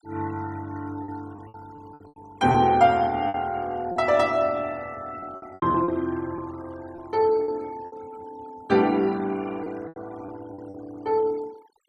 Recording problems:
denoising artefacts; signal-to-artefact ratio 24 dB
lost packets; 8% of the sound replaced, filled with repeated pitch periods

